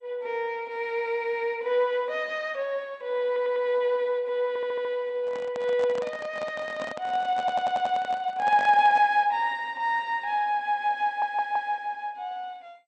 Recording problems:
lossy codec; MP2, log-spectral distance 2 dB
stutter; 4 times, first at 3.5 s
handling noise; from 5 to 9 s; peak -6 dB vs average level

